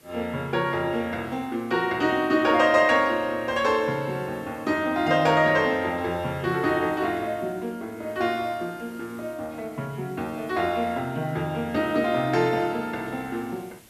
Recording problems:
hiss; slope -3 dB per octave, SNR 27 dB

